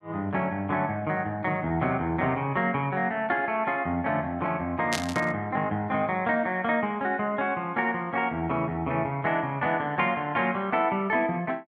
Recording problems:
burst of static; at 5 s; peak +2 dB vs average level

